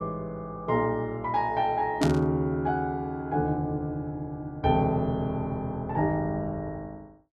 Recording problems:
burst of static; at 2 s; peak 0 dB vs average level

